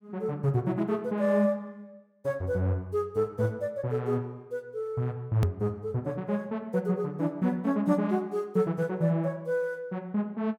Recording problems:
click at an edit; at 5.5 s

